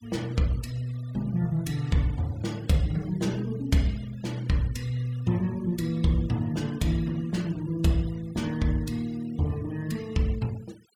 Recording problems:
noise reduction artefacts; signal-to-artefact ratio 22 dB

